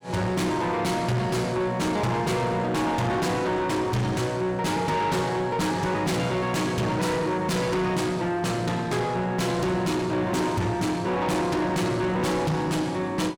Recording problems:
distorted audio; soft clipping, signal-to-distortion ratio 6 dB

